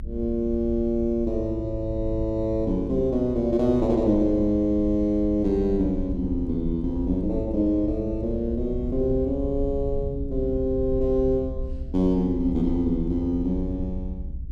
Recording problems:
low-frequency rumble; below 72 Hz, strongest tone 26 Hz, SNR 10 dB

